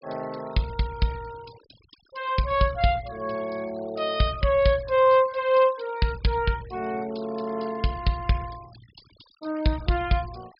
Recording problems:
treble cut off; nothing above 5.2 kHz
denoising artefacts; signal-to-artefact ratio 23 dB

